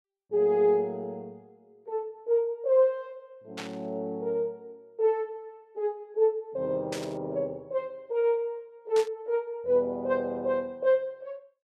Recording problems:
burst of static; at 3.5 s, at 7 s and at 9 s; peak -5 dB vs average level

